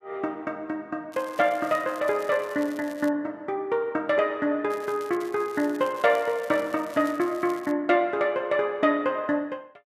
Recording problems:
crackling; from 1 to 3 s, at 4.5 s and from 5 to 7.5 s; loose cable, SNR 23 dB

